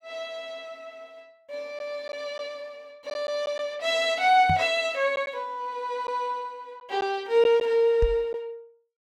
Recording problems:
packet loss; 2% of the sound replaced, filled with silence
microphone bump; at 4.5 s and at 8 s; peak +2 dB vs average level

